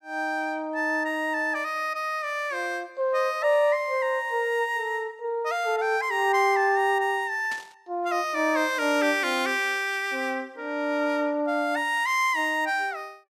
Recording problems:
static burst; at 7.5 s; peak -10 dB vs average level

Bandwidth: 14.5 kHz